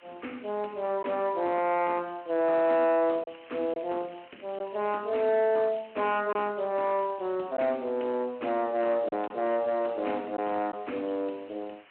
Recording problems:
phone line; 220 Hz to 3.1 kHz, Speex
distorted audio; soft clipping, signal-to-distortion ratio 11 dB
background hiss; SNR 27 dB
packet loss; 1.4% of the sound replaced, filled with silence
crackle; from 3.5 to 6 s; loose cable, SNR 27 dB

